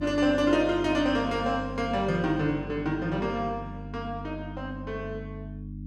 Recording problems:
hum; 50 Hz, harmonics up to 300 Hz, SNR 11 dB

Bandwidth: 14.5 kHz